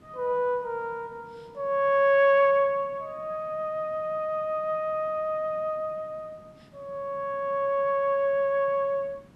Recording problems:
background hiss; slope -6 dB per octave, SNR 28 dB

